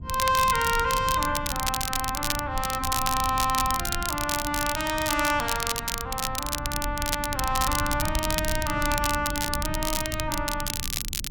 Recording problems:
rumble; below 130 Hz, SNR 9 dB
crackle; vinyl, SNR 3 dB

